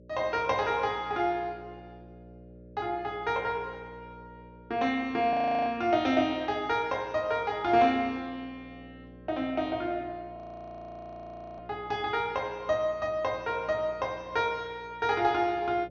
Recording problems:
treble cut off; nothing above 6.5 kHz
hum; 60 Hz, harmonics up to 600 Hz, SNR 22 dB
audio freezing; at 5.5 s and at 10 s for 1 s

